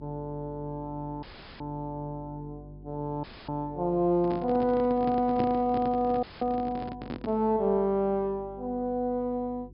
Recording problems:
low-pass filter; nothing above 5.5 kHz
electrical hum; 50 Hz, harmonics up to 400 Hz, SNR 20 dB
audio cutting out; at 1 s, at 3 s and at 6 s
handling noise; from 4 to 7.5 s; peak +2 dB vs average level

